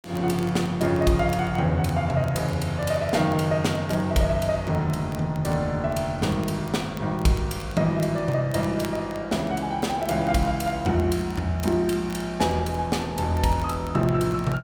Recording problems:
crackling; vinyl, SNR 25 dB

